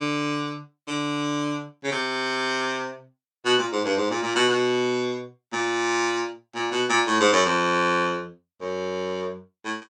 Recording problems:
none

